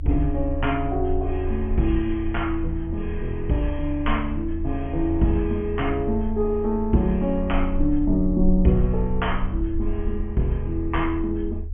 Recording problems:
treble missing; nothing above 3.3 kHz
rumble; below 76 Hz, strongest tone 24 Hz, SNR 6 dB

